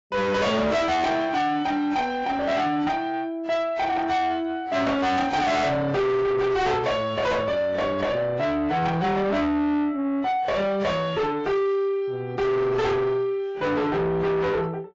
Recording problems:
codec artefacts; AAC, log-spectral distance 2 dB, nothing above 7.3 kHz
distorted audio; soft clipping, signal-to-distortion ratio 6 dB
static burst; at 5 s; peak -13 dB vs average level

